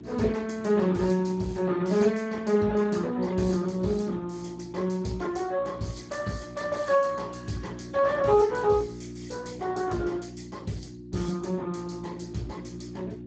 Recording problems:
lossy codec; Speex, log-spectral distance 5 dB, nothing above 7.6 kHz
hum; 60 Hz, harmonics up to 360 Hz, SNR 15 dB

